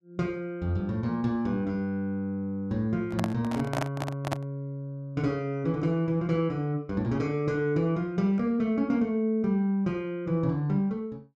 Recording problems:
microphone handling noise; from 3 to 4.5 s; peak +2 dB vs average level

